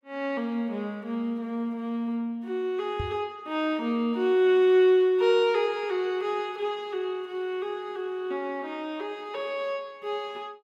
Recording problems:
microphone bump; at 3 s; peak -2 dB vs average level

